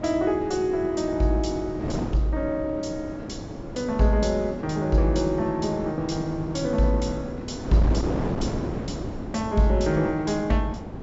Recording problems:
treble missing; nothing above 8 kHz
hum; 50 Hz, harmonics up to 1 kHz, SNR 25 dB
wind on the microphone; below 460 Hz, SNR 8 dB

